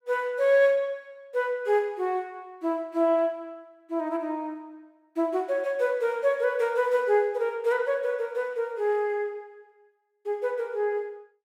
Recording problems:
none

